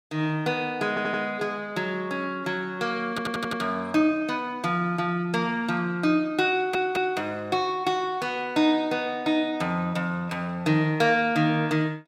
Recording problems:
audio stuttering; at 1 s, at 3 s and at 6.5 s

